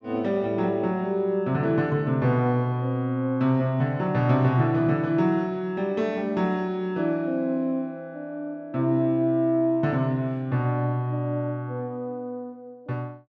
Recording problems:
none

